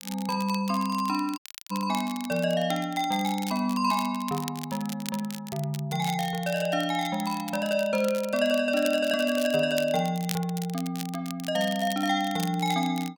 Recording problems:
crackle; vinyl, SNR 14 dB
audio cutting out; at 1.5 s

